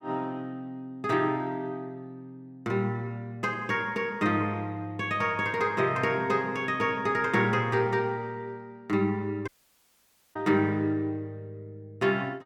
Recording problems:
audio cutting out; at 9.5 s for 1 s

